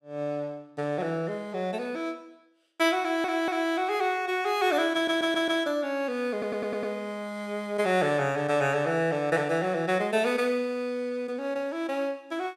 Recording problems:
stutter; at 3 s, at 5 s and at 6.5 s

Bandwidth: 15.5 kHz